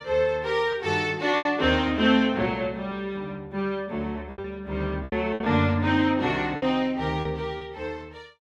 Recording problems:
lost packets; 6% of the sound replaced, filled with repeated pitch periods

